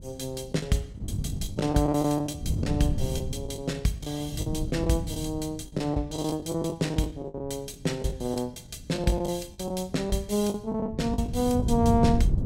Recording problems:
wind on the microphone; below 160 Hz, SNR 4 dB
packet loss; 11% of the sound replaced, filled with the last packet

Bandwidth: 16 kHz